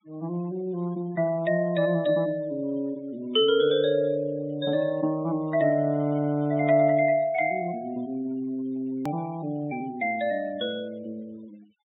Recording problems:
treble missing; nothing above 4 kHz
denoising artefacts; signal-to-artefact ratio 24 dB
edit click; at 9 s

